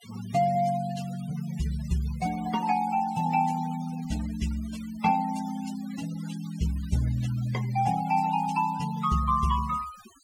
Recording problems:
denoising artefacts; signal-to-artefact ratio 17 dB

